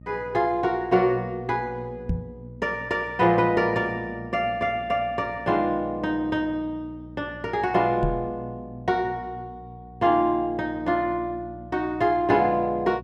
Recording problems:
hum; 60 Hz, harmonics up to 600 Hz, SNR 19 dB
microphone bump; at 2 s and at 8 s; peak +1 dB vs average level

